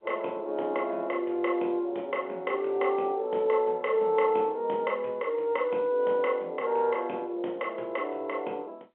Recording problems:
telephone audio; 300 Hz to 3.6 kHz, G.711

